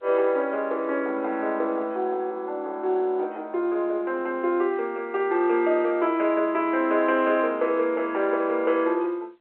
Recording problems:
phone line; 300 Hz to 3.2 kHz, G.711

